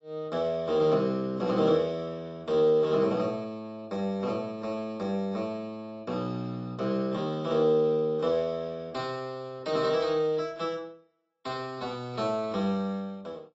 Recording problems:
lossy codec; AAC, log-spectral distance 2 dB, nothing above 7.6 kHz

